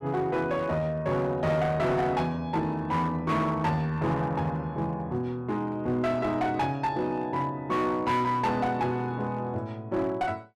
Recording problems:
distortion; hard clipping, uneven, signal-to-distortion ratio 10 dB

